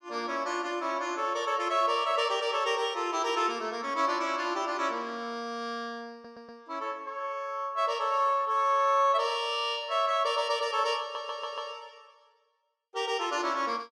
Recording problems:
stutter; at 6 s and at 11 s

